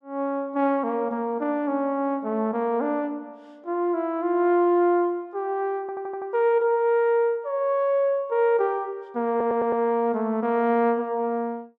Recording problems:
stutter; at 6 s and at 9.5 s

